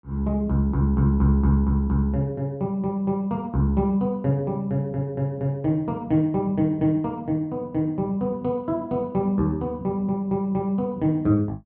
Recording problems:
treble cut off; nothing above 4.8 kHz

